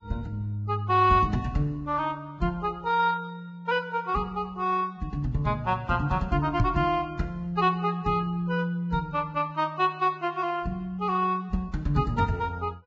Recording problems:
lossy compression; Vorbis, log-spectral distance 2 dB
microphone thump; at 6.5 s; peak +7 dB vs average level

